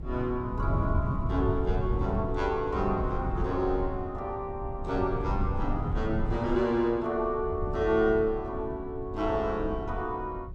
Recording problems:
wind noise; below 120 Hz, SNR 4 dB

